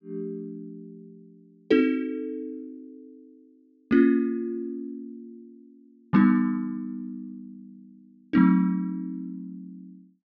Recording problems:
treble cut off; nothing above 8 kHz

